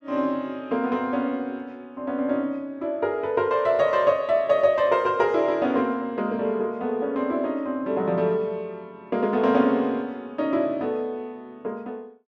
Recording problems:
none

